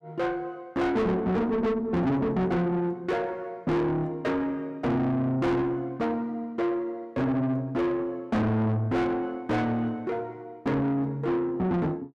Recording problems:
distorted audio; soft clipping, signal-to-distortion ratio 7 dB

